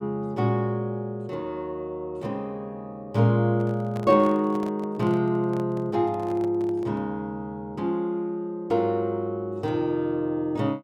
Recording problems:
microphone handling noise; from 3.5 to 7 s; peak -9 dB vs average level

